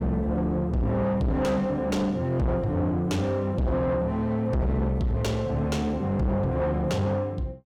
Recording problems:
distortion; soft clipping, signal-to-distortion ratio 6 dB

